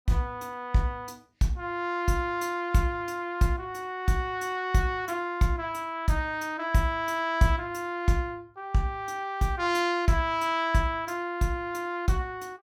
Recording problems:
none

